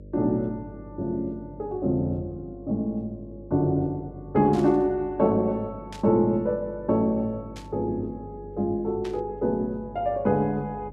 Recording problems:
hum; 50 Hz, harmonics up to 600 Hz, SNR 18 dB
burst of static; 4 times, first at 4.5 s; peak -12 dB vs average level

